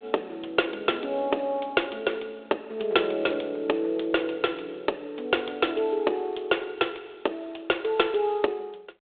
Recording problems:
telephone audio; 320 Hz to 3.6 kHz, G.726

